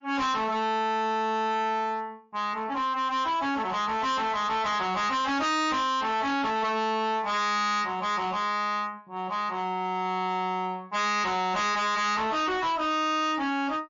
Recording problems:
codec artefacts; MP3, then MP3, log-spectral distance 2 dB, nothing above 7.1 kHz
distorted audio; hard clipping, signal-to-distortion ratio 6 dB

